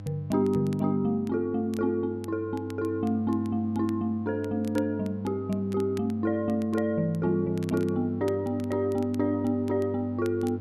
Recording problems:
electrical hum; 50 Hz, harmonics up to 800 Hz, SNR 12 dB
crackling; vinyl, SNR 25 dB

